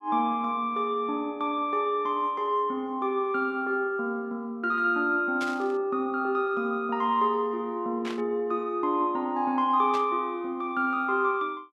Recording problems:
static burst; at 5.5 s, at 8 s and at 10 s; peak -6 dB vs average level

